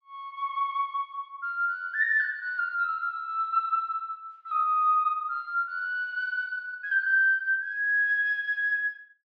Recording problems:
none

